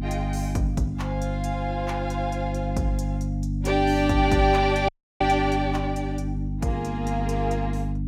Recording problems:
electrical hum; 50 Hz, harmonics up to 300 Hz, SNR 3 dB
dropout; at 5 s

